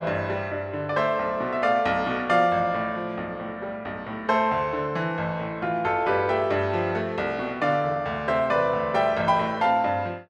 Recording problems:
none

